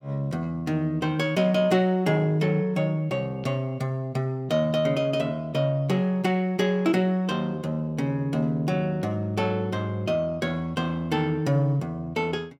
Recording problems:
none

